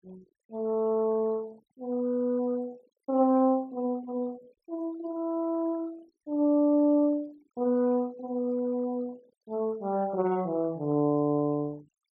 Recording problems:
noise reduction artefacts; signal-to-artefact ratio 27 dB

